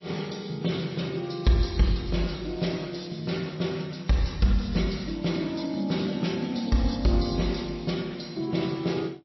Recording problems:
lossy codec; MP3, then MP3, log-spectral distance 5 dB, nothing above 5.7 kHz

